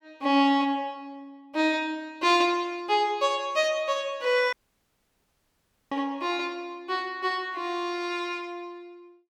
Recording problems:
audio cutting out; at 4.5 s for 1.5 s

